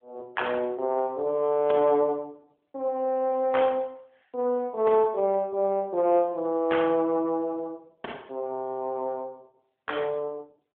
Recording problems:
phone line; 280 Hz to 3.4 kHz, AMR-NB

